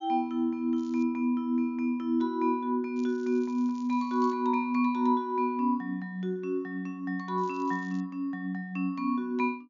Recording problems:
low-pass filter; nothing above 7.1 kHz
crackling; at 1 s, from 3 to 4.5 s and at 7.5 s; loose cable, SNR 29 dB

